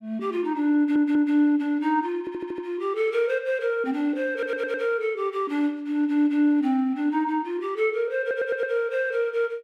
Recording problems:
stutter; 4 times, first at 1 s

